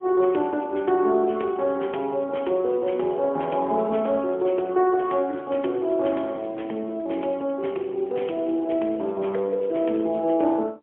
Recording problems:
telephone audio; 300 Hz to 3.3 kHz, AMR-NB, then MP3

